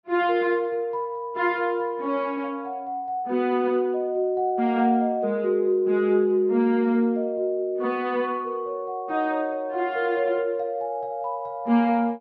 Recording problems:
low-pass filter; nothing above 6.2 kHz

